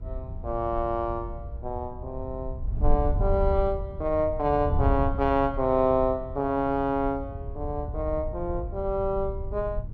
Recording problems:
wind noise; below 82 Hz, SNR 6 dB

